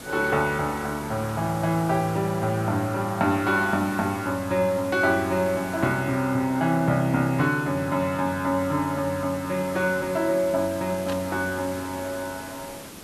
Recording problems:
background hiss; slope -4 dB per octave, SNR 15 dB
burst of static; at 11 s; peak -8 dB vs average level

